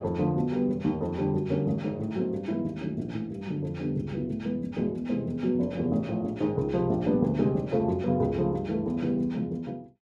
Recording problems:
none

